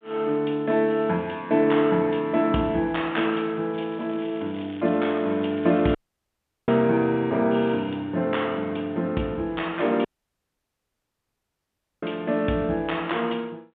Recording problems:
phone line; 110 Hz to 3.6 kHz, G.726
crackling; from 3.5 to 6 s; loose cable, SNR 25 dB
audio cutting out; at 6 s for 0.5 s and at 10 s for 2 s

